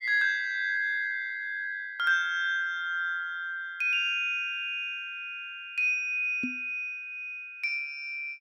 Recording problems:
knock on the microphone; at 6.5 s; peak -1 dB vs average level

